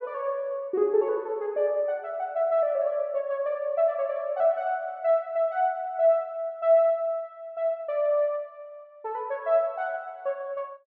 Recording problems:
none

